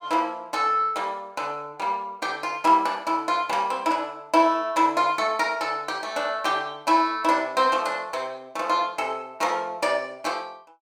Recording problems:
none

